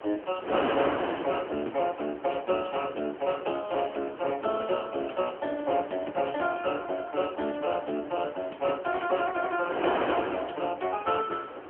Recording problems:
telephone audio; 240 Hz to 3.1 kHz, AMR-NB
wind noise; below 1.1 kHz, SNR 6 dB

